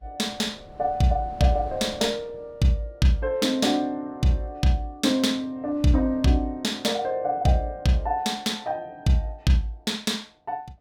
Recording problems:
wind noise; below 450 Hz, SNR 22 dB

